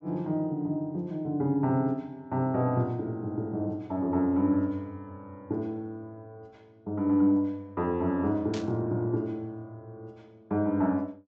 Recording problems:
low-pass filter; nothing above 8 kHz
static burst; at 8.5 s; peak -8 dB vs average level

